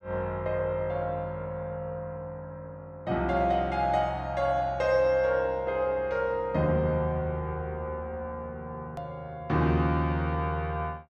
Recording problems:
hard cut with a click; at 9 s

